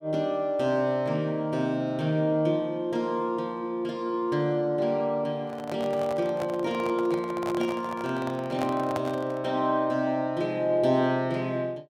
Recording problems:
handling noise; from 5.5 to 9.5 s; peak -2 dB vs average level

